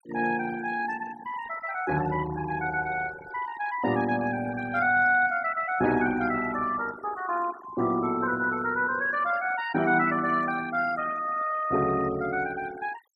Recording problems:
noise reduction artefacts; signal-to-artefact ratio 16 dB

